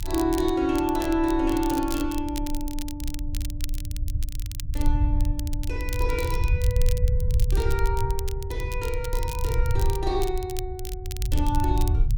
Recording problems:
low-frequency rumble; below 80 Hz, SNR 0 dB
crackle; vinyl, SNR 12 dB

